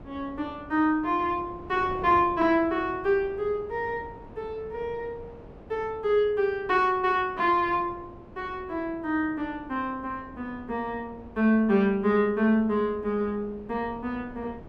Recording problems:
wind on the microphone; below 520 Hz, SNR 20 dB

